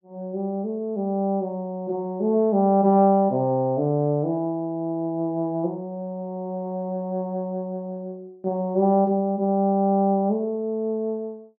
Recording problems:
none

